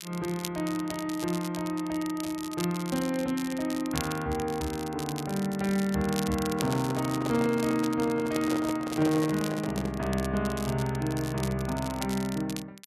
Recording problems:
crackle; vinyl, SNR 12 dB
microphone handling noise; from 6.5 to 10 s; peak -2 dB vs average level

